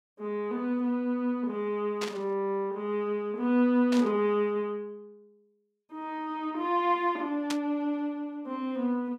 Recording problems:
burst of static; at 2 s, at 4 s and at 7.5 s; peak -1 dB vs average level

